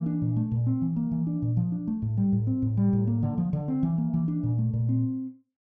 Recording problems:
none

